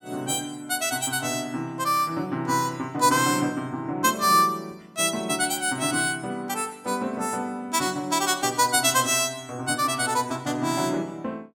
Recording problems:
none

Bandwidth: 16.5 kHz